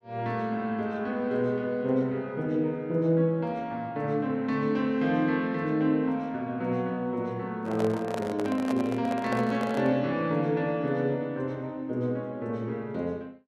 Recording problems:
microphone handling noise; from 7.5 to 10 s; peak -2 dB vs average level

